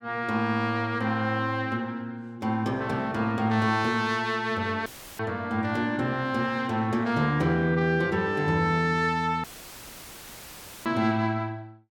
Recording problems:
audio cutting out; at 5 s and at 9.5 s for 1.5 s; filled with static

